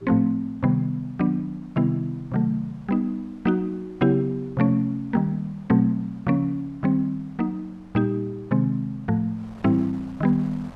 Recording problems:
wind on the microphone; below 890 Hz, SNR 27 dB

